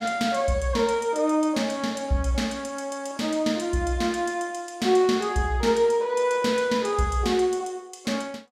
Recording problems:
none

